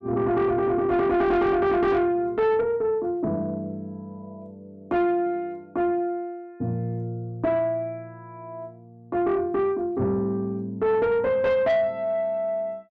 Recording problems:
distorted audio; soft clipping, signal-to-distortion ratio 10 dB

